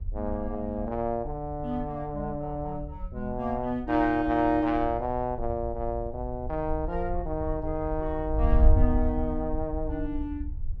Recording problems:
wind on the microphone; below 70 Hz, SNR 5 dB

